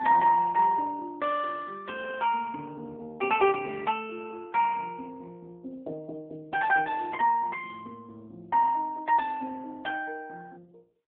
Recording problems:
telephone audio; 280 Hz to 3.1 kHz, AMR-NB

